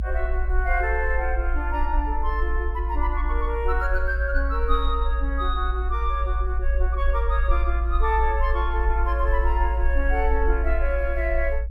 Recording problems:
rumble; below 56 Hz, SNR -1 dB

